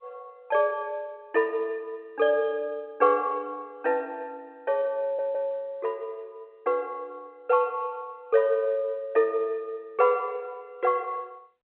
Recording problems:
telephone audio; 280 Hz to 3.5 kHz, G.711
stutter; at 5 s

